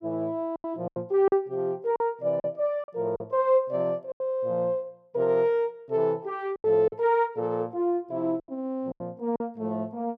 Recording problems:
lost packets; 8% of the sound replaced, filled with silence

